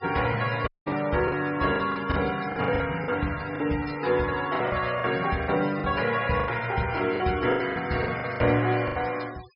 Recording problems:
treble cut off; nothing above 5.5 kHz
denoising artefacts; signal-to-artefact ratio 17 dB
packet loss; 11% of the sound replaced, filled with the last packet
dropout; at 0.5 s

